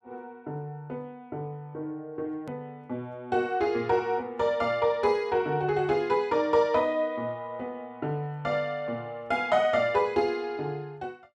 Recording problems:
hard cut with a click; at 2.5 s

